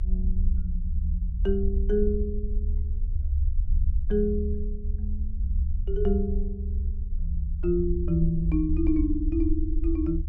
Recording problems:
rumble; below 70 Hz, SNR 1 dB

